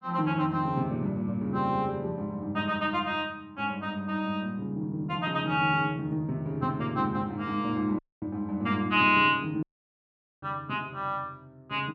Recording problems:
dropout; at 8 s and at 9.5 s for 1 s

